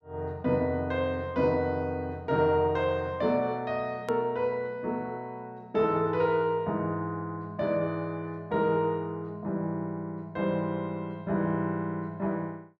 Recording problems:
hard cut with a click; at 4 s

